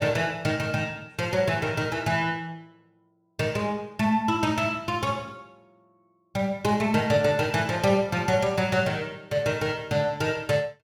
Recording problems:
none

